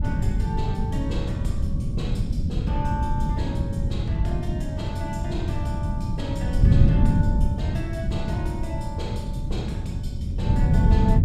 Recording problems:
wind noise; below 150 Hz, SNR -8 dB

